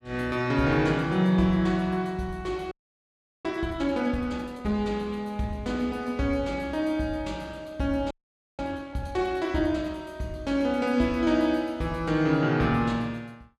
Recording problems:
frozen audio; at 2.5 s for 0.5 s and at 8 s

